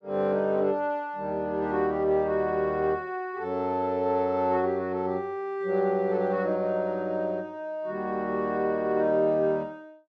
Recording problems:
none

